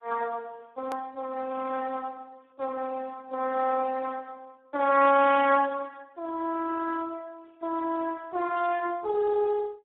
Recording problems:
telephone audio; 260 Hz to 2.6 kHz, Speex
click at an edit; at 1 s

